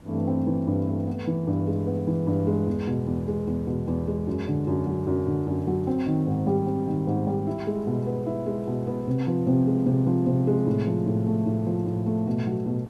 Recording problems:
background hiss; slope -7 dB per octave, SNR 23 dB

